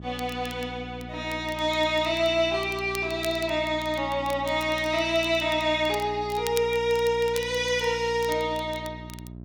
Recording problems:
hum; 60 Hz, harmonics up to 720 Hz, SNR 15 dB
crackle; vinyl, SNR 18 dB

